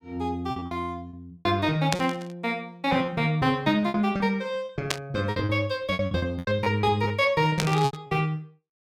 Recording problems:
lost packets; 13% of the sound replaced, filled with repeated pitch periods
static burst; at 2 s, at 5 s and at 7.5 s; peak +5 dB vs average level

